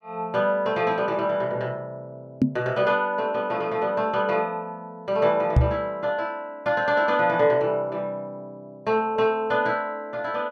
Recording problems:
microphone bump; at 2.5 s and at 5.5 s; peak +9 dB vs average level

